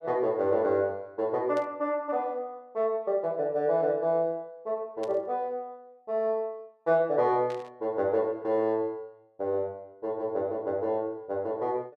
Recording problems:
burst of static; at 1.5 s, at 5 s and at 7.5 s; peak -13 dB vs average level

